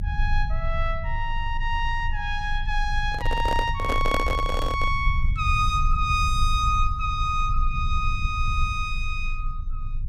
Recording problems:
rumble; below 66 Hz, strongest tone 24 Hz, SNR 3 dB
microphone handling noise; from 3 to 5 s; peak +4 dB vs average level

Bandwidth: 15.5 kHz